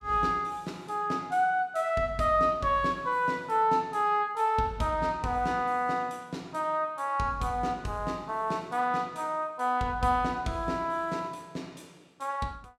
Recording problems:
none

